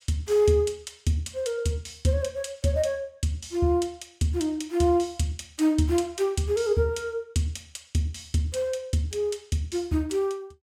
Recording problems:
none

